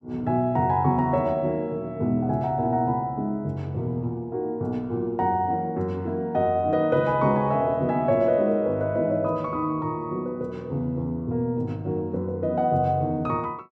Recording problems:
none

